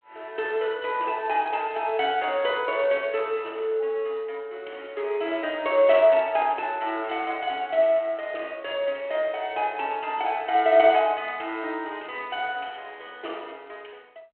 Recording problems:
phone line; 300 Hz to 3.3 kHz, G.726

